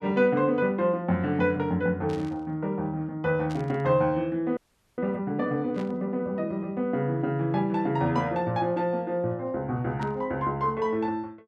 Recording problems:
static burst; 4 times, first at 2 s; peak -13 dB vs average level
audio freezing; at 4.5 s

